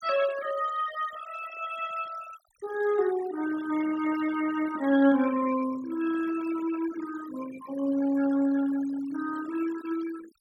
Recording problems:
denoising artefacts; signal-to-artefact ratio 15 dB

